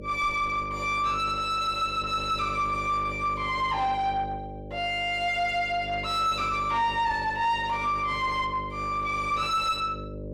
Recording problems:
distortion; soft clipping, signal-to-distortion ratio 9 dB
hum; 50 Hz, harmonics up to 600 Hz, SNR 12 dB

